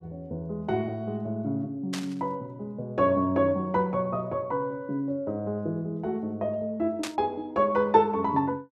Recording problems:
static burst; at 2 s and at 7 s; peak -1 dB vs average level

